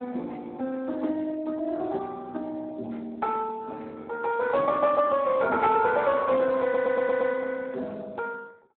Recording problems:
phone line; 220 Hz to 2.2 kHz, Speex
audio stuttering; at 6.5 s

